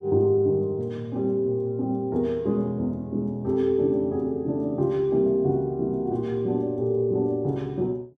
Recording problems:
none

